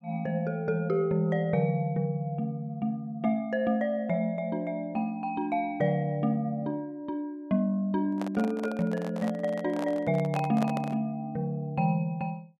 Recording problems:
handling noise; from 8 to 11 s; peak -2 dB vs average level

